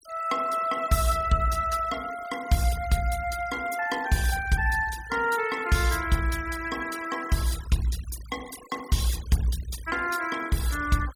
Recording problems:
noise reduction artefacts; signal-to-artefact ratio 16 dB

